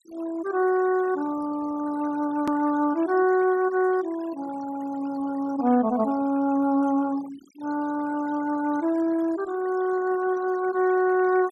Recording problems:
noise reduction artefacts; signal-to-artefact ratio 19 dB
click at an edit; at 2.5 s

